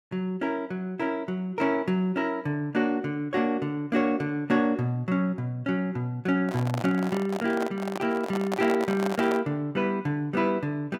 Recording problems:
microphone handling noise; from 6.5 to 9.5 s; peak 0 dB vs average level

